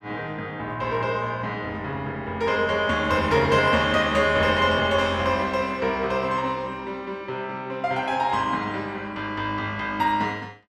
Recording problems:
none

